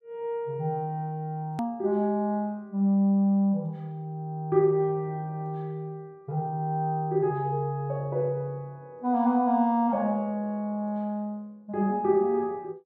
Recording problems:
edit click; at 1.5 s

